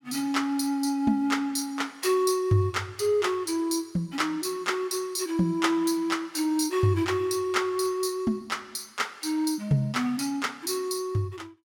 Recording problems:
none

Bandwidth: 17.5 kHz